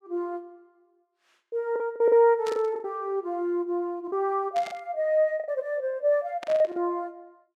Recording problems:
lost packets; 9% of the sound replaced, filled with the last packet
burst of static; at 2.5 s, at 4.5 s and at 6.5 s; peak -9 dB vs average level

